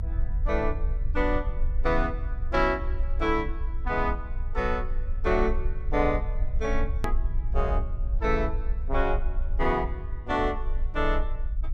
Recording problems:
low-frequency rumble; below 54 Hz, strongest tone 24 Hz, SNR 2 dB
click at an edit; at 7 s

